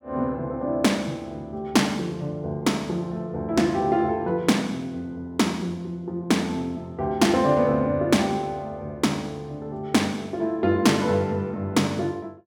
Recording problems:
none

